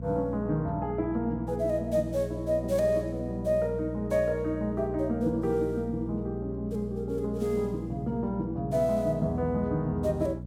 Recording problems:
electrical hum; 60 Hz, harmonics up to 480 Hz, SNR 9 dB

